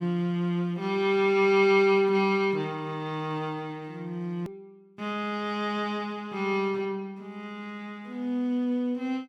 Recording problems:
edit click; at 4.5 s

